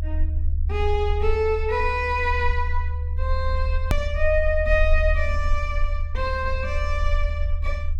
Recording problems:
low-frequency rumble; below 76 Hz, strongest tone 22 Hz, SNR 1 dB
edit click; at 4 s

